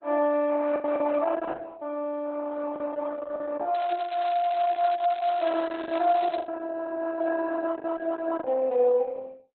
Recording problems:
codec artefacts; Opus, log-spectral distance 4 dB, nothing above 3.9 kHz
packet loss; 4% of the sound replaced, filled with the last packet
crackle; from 3.5 to 6.5 s; loose cable, SNR 19 dB

